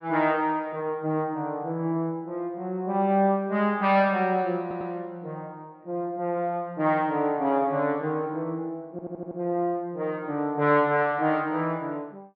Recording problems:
treble missing; nothing above 5.4 kHz
stutter; at 4.5 s and at 9 s

